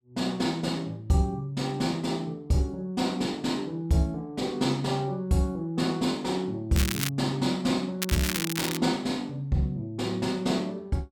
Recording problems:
crackle; at 6.5 s and at 8 s; loose cable, SNR 3 dB

